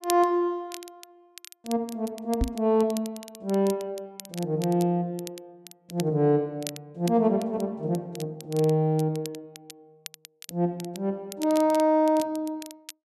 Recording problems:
crackle; vinyl, SNR 17 dB
knock on the microphone; at 2.5 s; peak +3 dB vs average level

